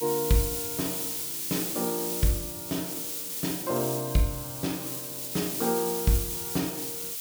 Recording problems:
hiss; SNR 1 dB

